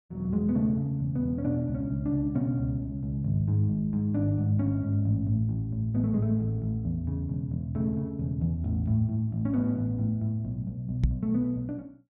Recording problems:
knock on the microphone; at 11 s; peak +7 dB vs average level

